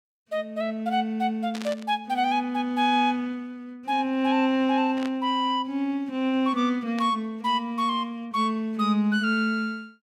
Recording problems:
burst of static; at 1.5 s, at 5 s and at 7 s; peak -8 dB vs average level

